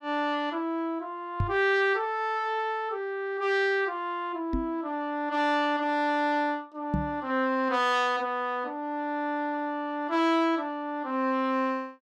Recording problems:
microphone thump; at 1.5 s, at 4.5 s and at 7 s; peak +3 dB vs average level

